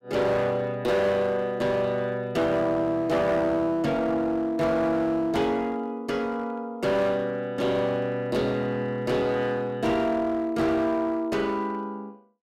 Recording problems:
distortion; hard clipping, uneven, signal-to-distortion ratio 10 dB

